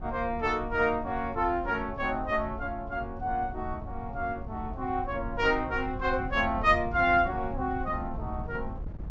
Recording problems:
treble cut off; nothing above 8 kHz
wind on the microphone; below 110 Hz, SNR 11 dB

